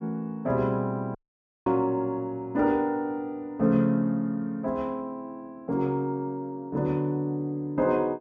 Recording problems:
audio cutting out; at 1 s for 0.5 s

